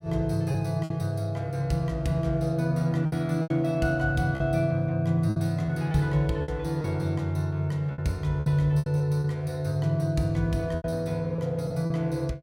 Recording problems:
lost packets; 7% of the sound replaced, filled with repeated pitch periods

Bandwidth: 16.5 kHz